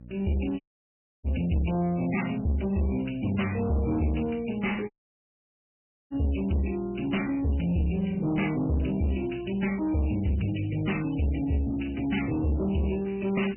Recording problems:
lossy codec; MP3, log-spectral distance 6 dB, nothing above 3 kHz
distorted audio; soft clipping, signal-to-distortion ratio 7 dB
mains hum; 60 Hz, harmonics up to 600 Hz, SNR 20 dB
audio cutting out; at 0.5 s for 0.5 s and at 5 s for 1 s

